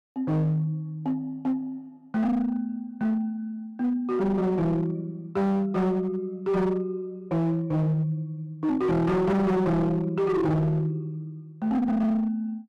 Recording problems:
distortion; hard clipping, uneven, signal-to-distortion ratio 7 dB

